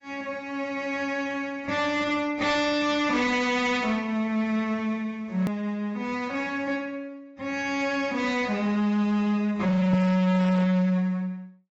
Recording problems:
lossy compression; AAC, log-spectral distance 2 dB, nothing above 18.9 kHz
distorted audio; hard clipping, signal-to-distortion ratio 8 dB
click at an edit; at 5.5 s

